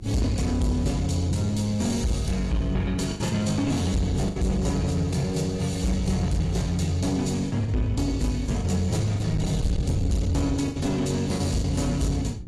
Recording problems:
codec artefacts; AAC, log-spectral distance 3 dB, nothing above 11.3 kHz
distorted audio; soft clipping, signal-to-distortion ratio 10 dB
electrical hum; 60 Hz, harmonics up to 360 Hz, SNR 24 dB
wind on the microphone; below 150 Hz, SNR 12 dB
packet loss; 5% of the sound replaced, filled with the last packet

